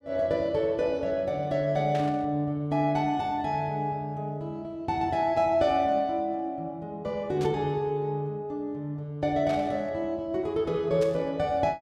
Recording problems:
burst of static; 4 times, first at 2 s; peak -9 dB vs average level

